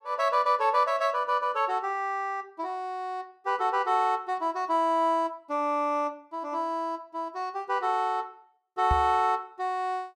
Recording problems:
microphone bump; at 9 s; peak +2 dB vs average level

